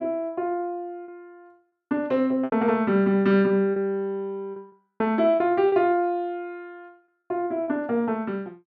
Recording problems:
lost packets; 5% of the sound replaced, filled with repeated pitch periods

